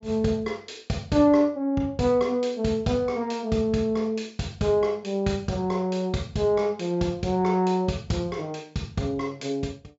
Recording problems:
treble missing; nothing above 8 kHz

